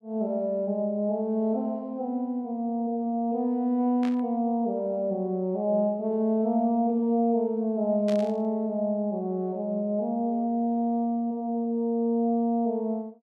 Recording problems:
static burst; at 4 s and at 8 s; peak -10 dB vs average level

